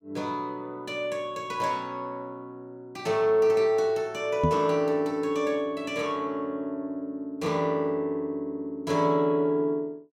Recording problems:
knock on the microphone; at 4.5 s; peak +5 dB vs average level

